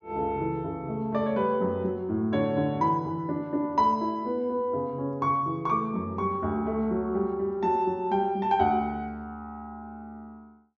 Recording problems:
treble cut off; nothing above 7 kHz

